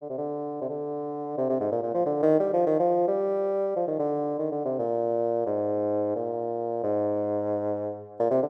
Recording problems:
none

